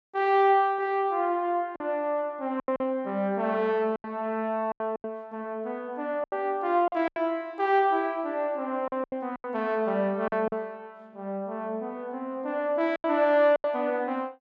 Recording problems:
packet loss; 7% of the sound replaced, filled with silence

